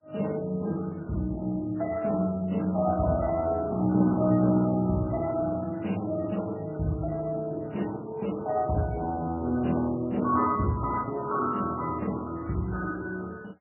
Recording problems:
lossy compression; Speex, then MP3, log-spectral distance 3 dB, nothing above 2.9 kHz

